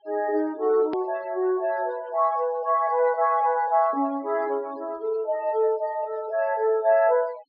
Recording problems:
treble missing; nothing above 5.5 kHz
denoising artefacts; signal-to-artefact ratio 26 dB
click at an edit; at 1 s

